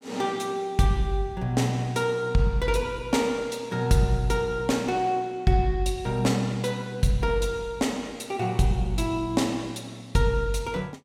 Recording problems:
none

